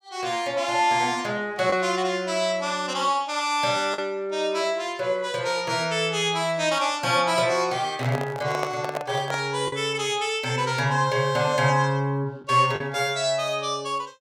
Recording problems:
packet loss; 1.1% of the sound replaced, filled with the last packet
handling noise; from 8 to 9.5 s; peak -1 dB vs average level

